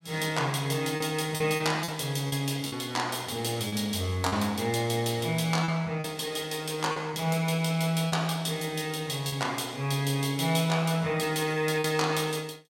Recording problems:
packet loss; 4% of the sound replaced, filled with repeated pitch periods

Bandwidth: 16 kHz